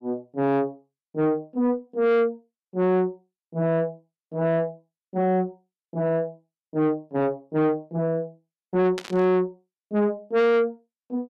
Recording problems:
distortion; soft clipping, signal-to-distortion ratio 8 dB
static burst; at 9 s; peak -5 dB vs average level

